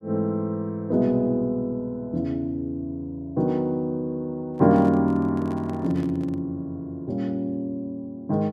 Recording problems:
microphone handling noise; from 4.5 to 6.5 s; peak -12 dB vs average level

